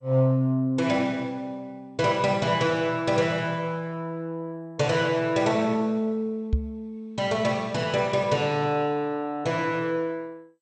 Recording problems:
codec artefacts; MP2, log-spectral distance 2 dB, nothing above 8.2 kHz
microphone bump; at 6.5 s; peak +5 dB vs average level

